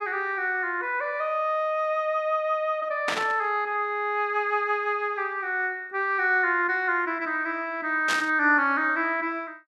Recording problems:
static burst; at 3 s and at 8 s; peak +1 dB vs average level

